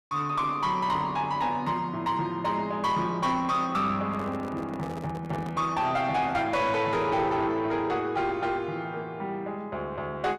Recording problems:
distortion; soft clipping, signal-to-distortion ratio 10 dB
handling noise; from 4 to 5.5 s; peak -7 dB vs average level

